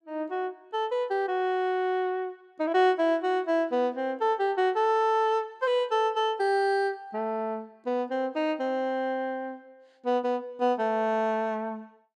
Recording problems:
none

